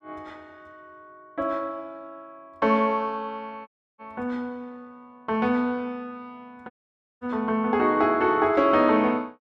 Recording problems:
dropout; at 3.5 s and at 6.5 s for 0.5 s

